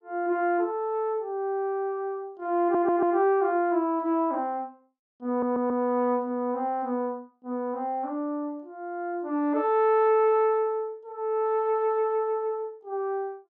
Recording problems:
audio stuttering; at 2.5 s and at 5.5 s

